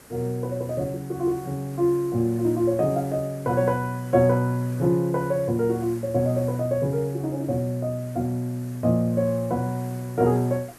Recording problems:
hiss; SNR 21 dB

